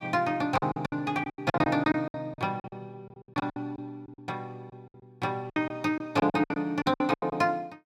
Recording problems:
packet loss; 18% of the sound replaced, filled with silence

